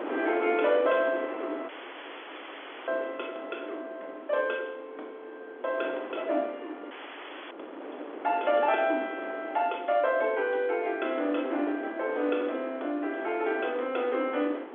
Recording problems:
telephone audio; 260 Hz to 3.5 kHz, G.711
wind on the microphone; below 840 Hz, SNR 10 dB
audio cutting out; at 1.5 s for 1 s and at 7 s for 0.5 s

